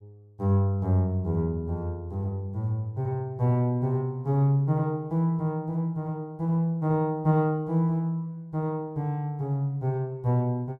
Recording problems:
none

